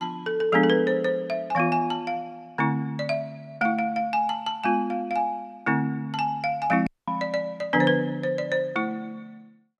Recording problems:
dropout; at 7 s

